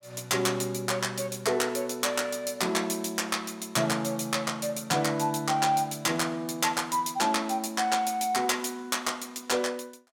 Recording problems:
none

